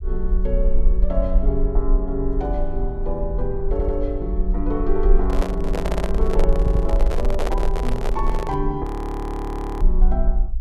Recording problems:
low-frequency rumble; below 44 Hz, SNR -2 dB
audio stuttering; at 3.5 s, at 6 s and at 6.5 s
microphone handling noise; from 5 to 8.5 s; peak +4 dB vs average level
audio freezing; at 9 s for 1 s

